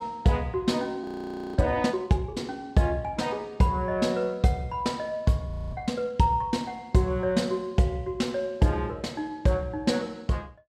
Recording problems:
frozen audio; at 1 s for 0.5 s and at 5.5 s

